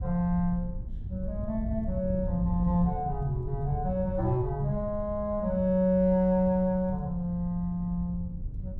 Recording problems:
wind noise; below 100 Hz, SNR 9 dB

